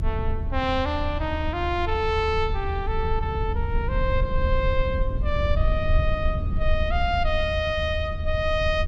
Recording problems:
low-frequency rumble; below 78 Hz, SNR 1 dB

